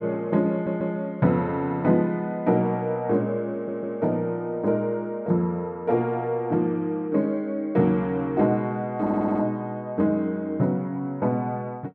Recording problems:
stutter; at 0.5 s, at 3.5 s and at 9 s

